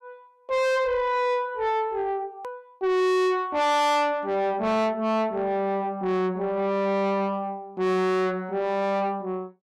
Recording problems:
distorted audio; soft clipping, signal-to-distortion ratio 6 dB
edit click; at 2.5 s

